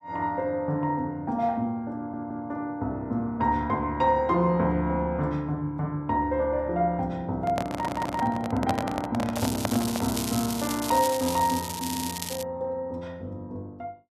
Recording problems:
stutter; at 2 s, at 7.5 s and at 12 s
handling noise; from 7.5 to 10 s; peak +5 dB vs average level
crackle; from 9.5 to 12 s; loose cable, SNR 6 dB

